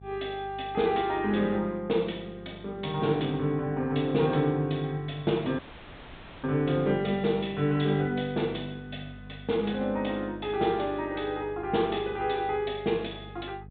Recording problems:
treble missing; nothing above 4 kHz
hum; 50 Hz, harmonics up to 450 Hz, SNR 20 dB
dropout; at 5.5 s for 1 s

